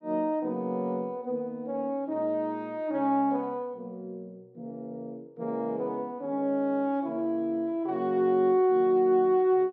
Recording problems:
none

